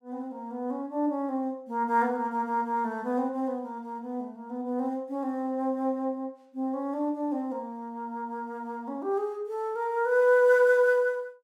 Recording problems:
none

